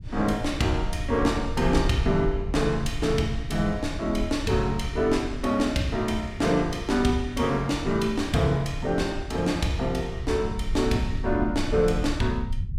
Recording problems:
rumble; below 86 Hz, SNR 9 dB

